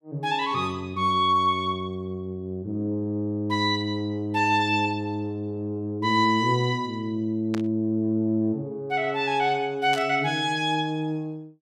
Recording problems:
burst of static; at 7.5 s and at 10 s; peak -6 dB vs average level

